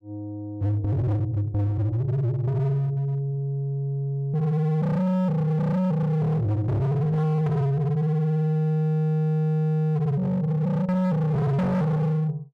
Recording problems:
distorted audio; hard clipping, signal-to-distortion ratio 7 dB

